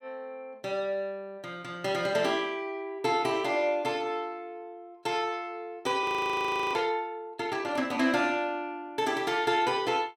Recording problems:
frozen audio; at 6 s for 0.5 s

